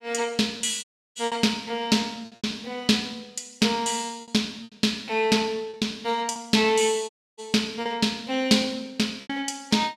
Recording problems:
packet loss; 6% of the sound replaced, filled with repeated pitch periods
dropout; at 1 s and at 7 s

